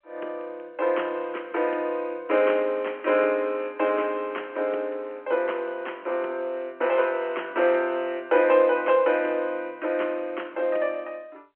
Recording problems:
telephone audio; 320 Hz to 3.1 kHz, G.711

